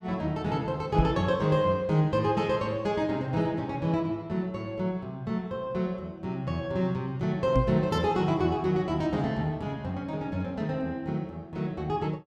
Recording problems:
knock on the microphone; at 1 s and at 7.5 s; peak +5 dB vs average level

